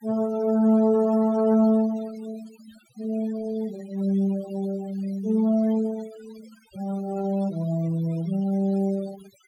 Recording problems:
noise reduction artefacts; signal-to-artefact ratio 21 dB

